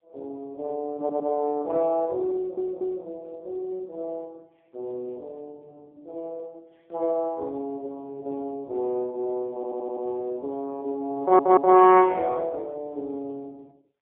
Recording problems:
telephone audio; 300 Hz to 2.4 kHz, AMR-NB, then MP3
stutter; 4 times, first at 1 s

